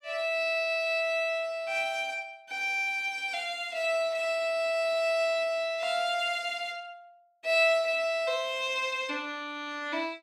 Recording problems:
none

